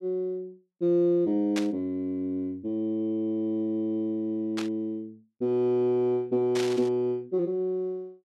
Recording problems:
burst of static; at 1.5 s, at 4.5 s and at 6.5 s; peak -2 dB vs average level

